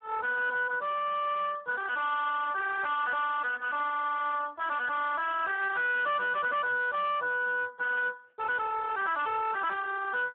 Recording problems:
phone line; 340 Hz to 3.5 kHz, Speex
distorted audio; hard clipping, uneven, signal-to-distortion ratio 6 dB

